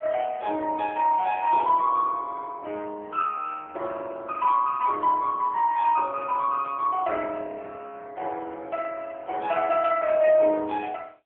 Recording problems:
telephone audio; 320 Hz to 3.4 kHz, AMR-NB

